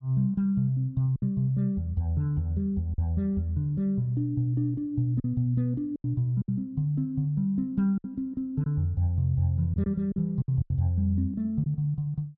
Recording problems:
packet loss; 5% of the sound replaced, filled with silence

